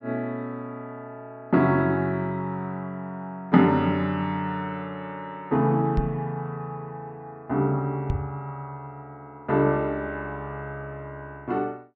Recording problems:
knock on the microphone; at 6 s and at 8 s; peak +4 dB vs average level

